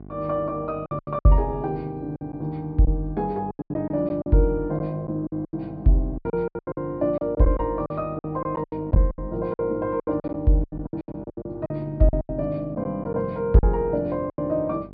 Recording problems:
treble missing; nothing above 5.5 kHz
hum; 50 Hz, harmonics up to 800 Hz, SNR 18 dB
lost packets; 15% of the sound replaced, filled with silence

